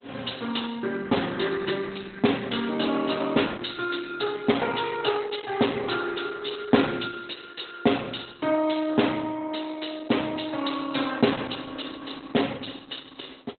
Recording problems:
lossy compression; Opus, log-spectral distance 11 dB, nothing above 4 kHz

